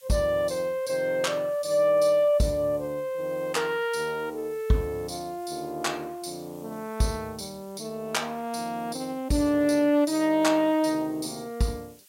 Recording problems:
hiss; slope +4 dB per octave, SNR 26 dB

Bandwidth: 16 kHz